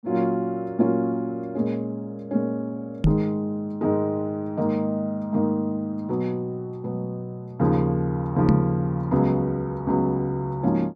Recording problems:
microphone thump; at 3 s and at 8.5 s; peak +9 dB vs average level

